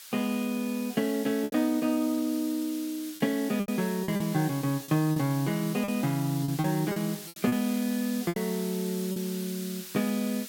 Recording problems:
hiss; slope +4 dB per octave, SNR 12 dB
lost packets; 7% of the sound replaced, filled with repeated pitch periods

